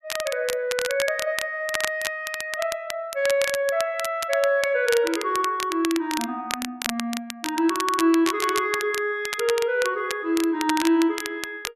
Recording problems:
crackle; vinyl, SNR 8 dB

